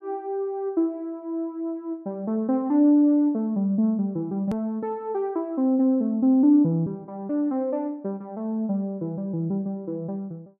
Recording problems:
click at an edit; at 4.5 s

